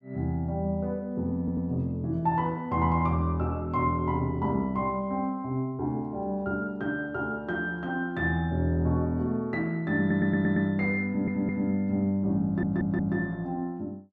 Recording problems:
stutter; 4 times, first at 1.5 s

